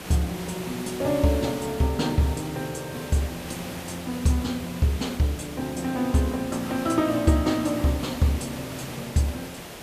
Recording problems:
hiss; slope -4 dB per octave, SNR 11 dB

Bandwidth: 14.5 kHz